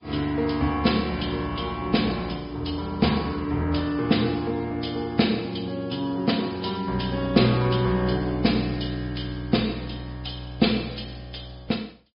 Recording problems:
treble cut off; nothing above 5.2 kHz
lossy codec; Vorbis, log-spectral distance 5 dB

